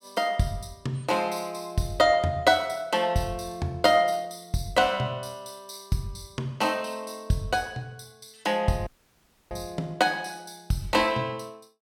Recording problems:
audio cutting out; at 9 s for 0.5 s

